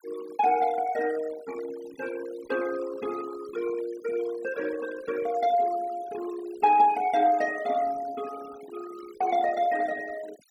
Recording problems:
noise reduction artefacts; signal-to-artefact ratio 18 dB

